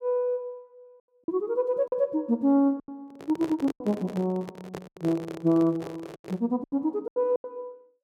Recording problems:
lost packets; 8% of the sound replaced, filled with silence
microphone handling noise; from 3 to 6.5 s; peak -5 dB vs average level

